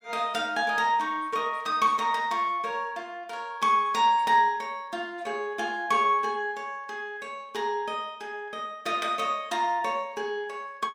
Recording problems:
none

